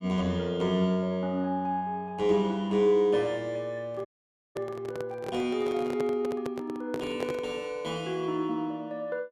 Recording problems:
microphone handling noise; from 4 to 7.5 s; peak -1 dB vs average level
audio cutting out; at 4 s for 0.5 s

